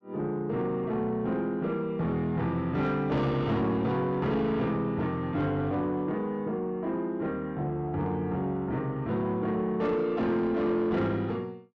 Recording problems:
distorted audio; soft clipping, signal-to-distortion ratio 11 dB

